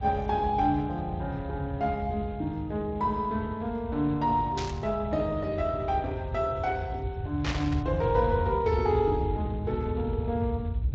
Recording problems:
codec artefacts; Speex, log-spectral distance 2 dB, nothing above 7.3 kHz
rumble; below 110 Hz, SNR 6 dB
static burst; at 4.5 s and at 7.5 s; peak 0 dB vs average level

